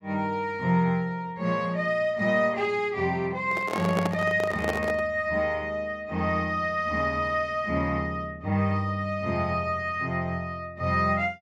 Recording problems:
handling noise; from 3.5 to 5 s; peak +1 dB vs average level

